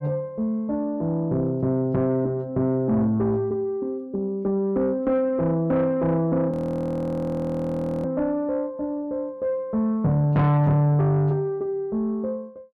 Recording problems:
distorted audio; soft clipping, signal-to-distortion ratio 11 dB
frozen audio; at 6.5 s for 1.5 s

